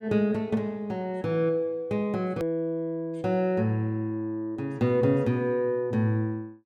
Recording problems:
click at an edit; at 2.5 s

